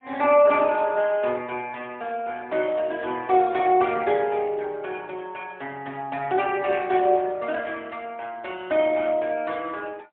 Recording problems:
phone line; 280 Hz to 3.5 kHz, AMR-NB, then MP3

